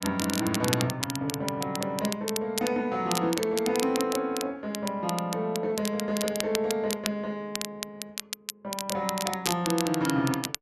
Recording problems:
crackling; vinyl, SNR 5 dB

